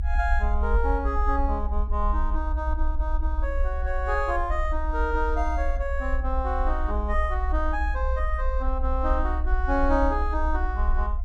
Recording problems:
rumble; below 62 Hz, strongest tone 24 Hz, SNR -1 dB

